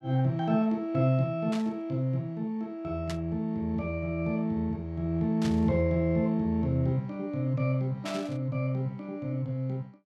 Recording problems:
static burst; 4 times, first at 1.5 s; peak -6 dB vs average level

